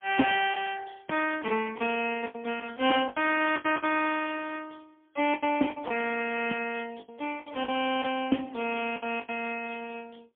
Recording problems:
telephone audio; 170 Hz to 3.2 kHz, AMR-NB, then MP3
lost packets; 9% of the sound replaced, filled with the last packet

